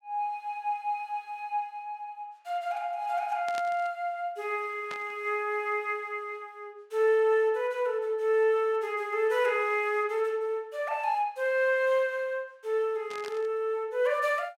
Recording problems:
static burst; at 3.5 s, at 5 s and at 13 s; peak -8 dB vs average level

